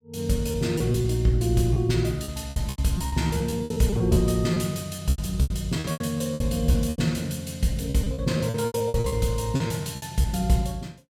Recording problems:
packet loss; 15% of the sound replaced, filled with repeated pitch periods

